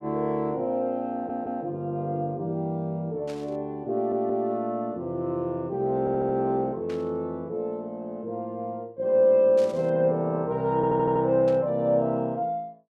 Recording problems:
stutter; 4 times, first at 1 s
burst of static; 4 times, first at 3.5 s; peak -14 dB vs average level

